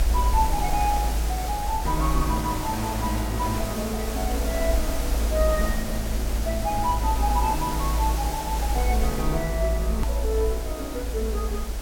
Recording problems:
hiss; SNR 5 dB
rumble; below 56 Hz, strongest tone 54 Hz, SNR 0 dB
hard cut with a click; at 10 s

